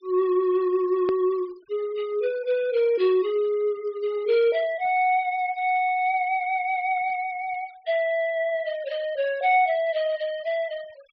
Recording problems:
treble cut off; nothing above 5.5 kHz
denoising artefacts; signal-to-artefact ratio 26 dB
edit click; at 1 s

